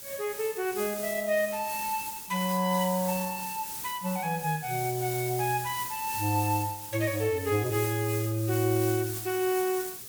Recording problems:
hiss; SNR 7 dB

